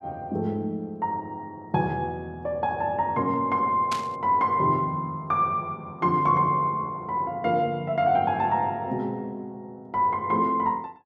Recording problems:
burst of static; at 4 s; peak -3 dB vs average level

